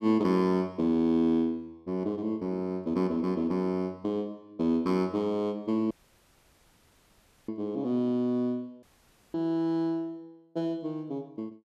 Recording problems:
audio cutting out; at 6 s for 1.5 s and at 9 s for 0.5 s

